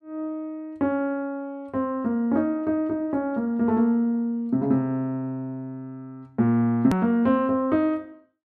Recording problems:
click at an edit; at 7 s

